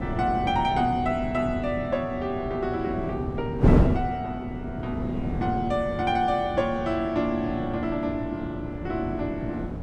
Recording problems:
wind on the microphone; below 320 Hz, SNR 3 dB

